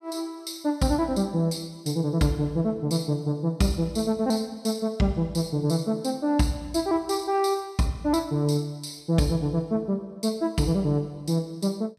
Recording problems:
none

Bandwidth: 14.5 kHz